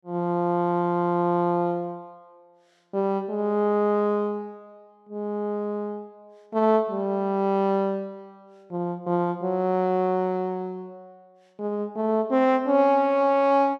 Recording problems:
none

